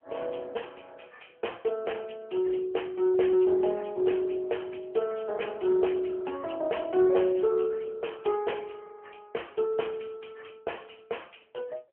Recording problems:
phone line; 280 Hz to 3.2 kHz, AMR-NB

